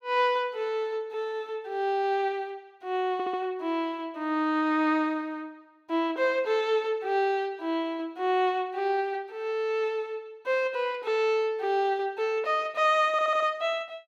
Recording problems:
stutter; at 3 s and at 13 s

